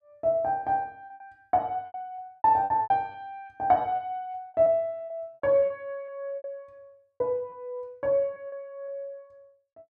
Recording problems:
packet loss; 12% of the sound replaced, filled with repeated pitch periods

